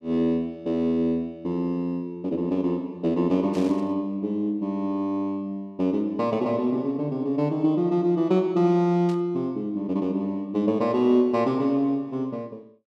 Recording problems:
burst of static; at 3.5 s and at 9 s; peak -14 dB vs average level

